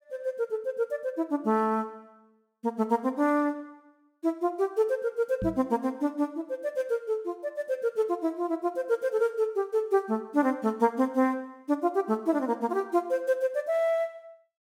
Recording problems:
microphone thump; at 5.5 s; peak -2 dB vs average level

